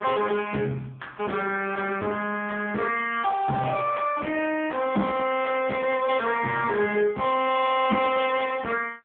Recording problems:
telephone audio; 170 Hz to 3.4 kHz, AMR-NB
distortion; soft clipping, signal-to-distortion ratio 10 dB

